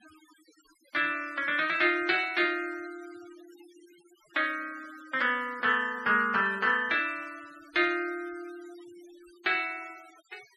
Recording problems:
noise reduction artefacts; signal-to-artefact ratio 22 dB

